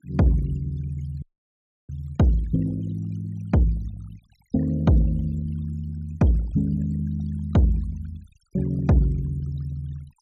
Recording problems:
noise reduction artefacts; signal-to-artefact ratio 24 dB
audio cutting out; at 1 s for 0.5 s

